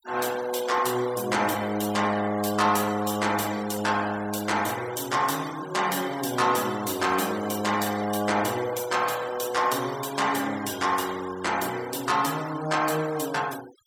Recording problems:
denoising artefacts; signal-to-artefact ratio 15 dB

